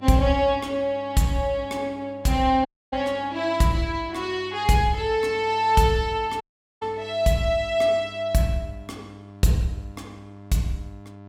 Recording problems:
hum; 50 Hz, harmonics up to 1.4 kHz, SNR 21 dB
dropout; at 2.5 s and at 6.5 s

